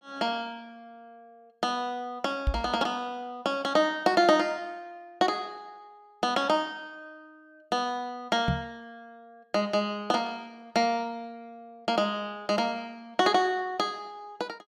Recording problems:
knock on the microphone; at 2.5 s and at 8.5 s; peak +4 dB vs average level

